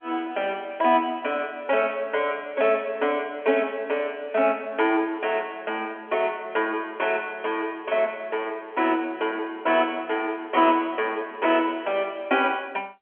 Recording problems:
phone line; 220 Hz to 3.3 kHz, G.711

